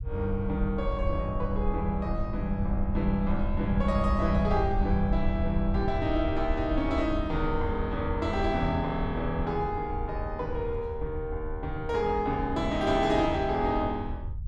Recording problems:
low-frequency rumble; below 78 Hz, SNR 5 dB

